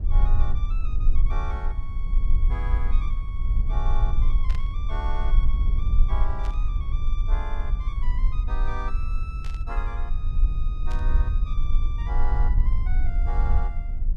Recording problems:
rumble; below 48 Hz, strongest tone 18 Hz, SNR -13 dB
burst of static; 4 times, first at 4.5 s; peak +1 dB vs average level

